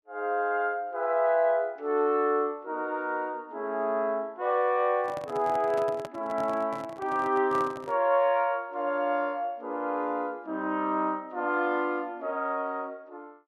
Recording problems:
handling noise; from 5 to 8 s; peak -7 dB vs average level

